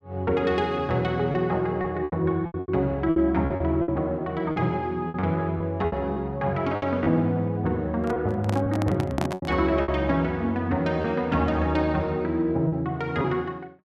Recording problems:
packet loss; 8% of the sound replaced, filled with repeated pitch periods
microphone handling noise; from 8 to 9.5 s; peak +1 dB vs average level

